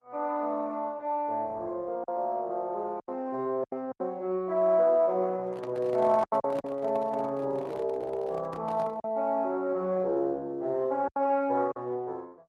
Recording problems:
lossy codec; Opus, then Opus, log-spectral distance 2 dB
lost packets; 5% of the sound replaced, filled with silence
handling noise; from 5.5 to 9 s; peak -8 dB vs average level

